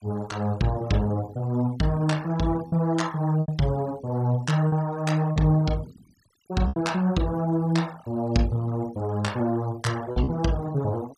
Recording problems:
denoising artefacts; signal-to-artefact ratio 23 dB
packet loss; 3% of the sound replaced, filled with repeated pitch periods

